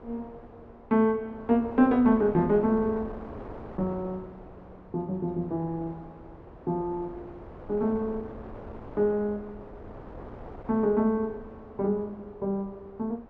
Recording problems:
wind noise; below 710 Hz, SNR 17 dB

